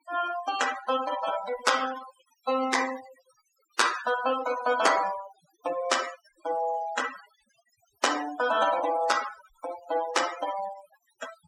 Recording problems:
denoising artefacts; signal-to-artefact ratio 10 dB

